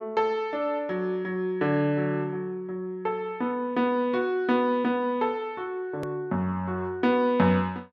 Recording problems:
click at an edit; at 6 s

